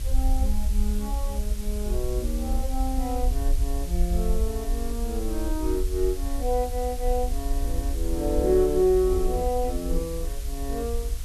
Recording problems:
electrical hum; 60 Hz, harmonics up to 600 Hz, SNR 22 dB
background hiss; slope +2 dB per octave, SNR 13 dB
low-frequency rumble; below 54 Hz, strongest tone 30 Hz, SNR 2 dB

